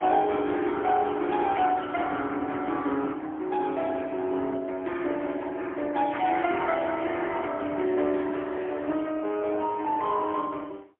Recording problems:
phone line; 240 Hz to 3.3 kHz, AMR-NB, then MP3

